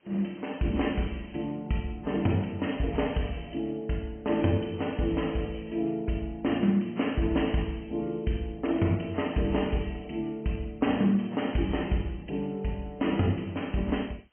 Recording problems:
treble cut off; nothing above 3.2 kHz
lossy compression; AAC, log-spectral distance 8 dB
background hiss; SNR 42 dB

